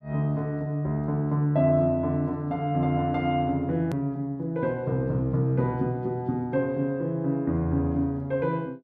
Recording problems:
click at an edit; at 4 s

